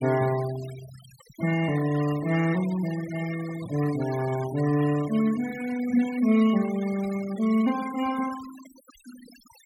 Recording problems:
denoising artefacts; signal-to-artefact ratio 17 dB

